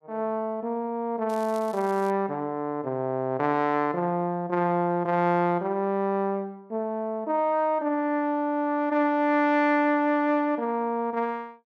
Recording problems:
crackle; at 1.5 s; loose cable, SNR 24 dB

